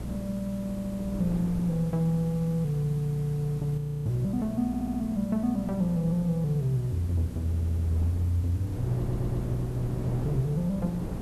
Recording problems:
hum; 60 Hz, harmonics up to 540 Hz, SNR 11 dB
background hiss; SNR 24 dB
wind noise; below 320 Hz, SNR 11 dB
stutter; 4 times, first at 0.5 s
audio freezing; at 4 s

